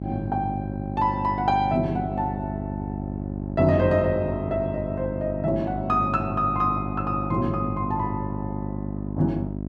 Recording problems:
electrical hum; 50 Hz, harmonics up to 750 Hz, SNR 5 dB

